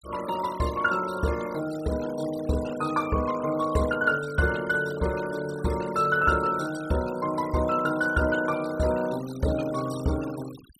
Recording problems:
noise reduction artefacts; signal-to-artefact ratio 16 dB

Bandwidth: 15 kHz